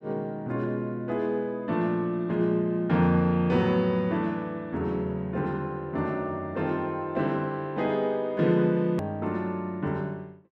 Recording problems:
click at an edit; at 9 s

